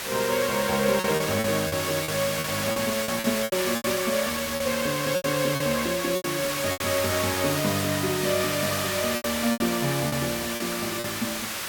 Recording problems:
hiss; slope 0 dB per octave, SNR 2 dB
packet loss; 10% of the sound replaced, filled with repeated pitch periods

